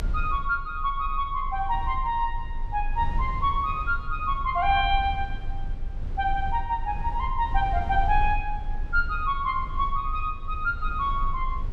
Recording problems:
low-frequency rumble; below 52 Hz, strongest tone 22 Hz, SNR 7 dB

